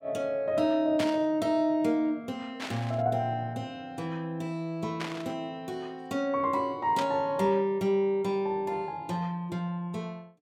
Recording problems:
burst of static; 4 times, first at 1 s; peak -1 dB vs average level

